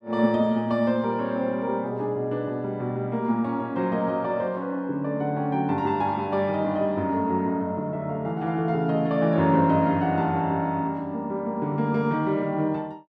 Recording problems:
none

